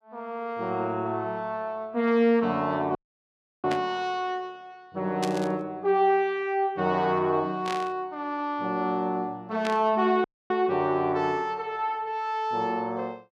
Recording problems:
audio cutting out; at 3 s for 0.5 s and at 10 s
burst of static; 4 times, first at 3.5 s; peak -2 dB vs average level

